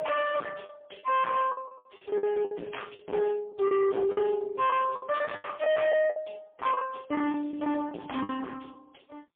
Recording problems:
telephone audio; 220 Hz to 3.4 kHz, AMR-NB, then MP3
distortion; hard clipping, uneven, signal-to-distortion ratio 5 dB
lost packets; 12% of the sound replaced, filled with the last packet

